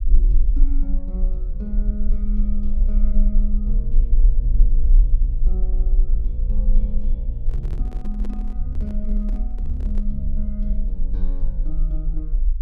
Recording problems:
rumble; below 40 Hz, strongest tone 26 Hz, SNR -9 dB
microphone handling noise; from 7.5 to 10 s; peak -4 dB vs average level

